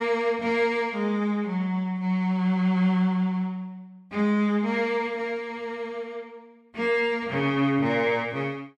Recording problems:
none

